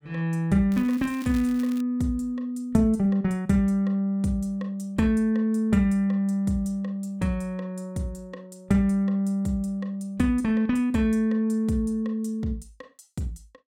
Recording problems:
crackling; from 0.5 to 2 s; loose cable, SNR 22 dB

